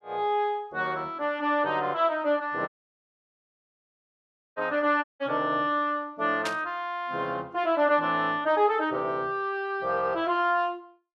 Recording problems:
dropout; at 2.5 s for 2 s and at 5 s
static burst; at 6.5 s; peak -2 dB vs average level

